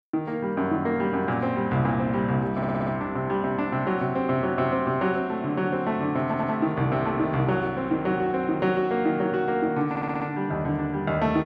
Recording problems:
audio stuttering; at 2.5 s, at 6.5 s and at 10 s

